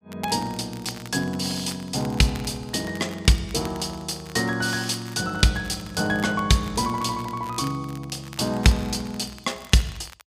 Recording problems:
crackle; vinyl, SNR 19 dB

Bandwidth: 15 kHz